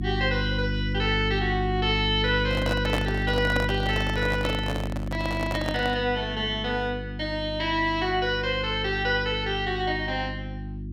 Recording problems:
hum; 50 Hz, harmonics up to 350 Hz, SNR 5 dB
microphone handling noise; from 2.5 to 6 s; peak +2 dB vs average level

